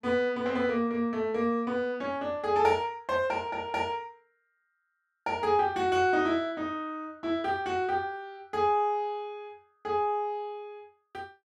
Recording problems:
none

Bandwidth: 12.5 kHz